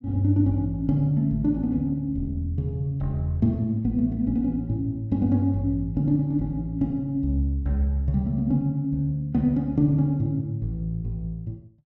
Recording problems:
none

